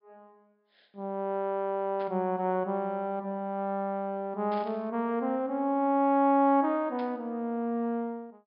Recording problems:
treble missing; nothing above 5.5 kHz
burst of static; at 2 s, at 4.5 s and at 7 s; peak -14 dB vs average level

